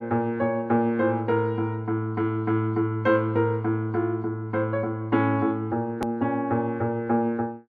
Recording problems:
hard cut with a click; at 6 s

